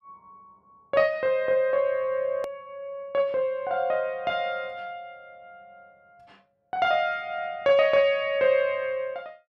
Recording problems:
click at an edit; at 2.5 s

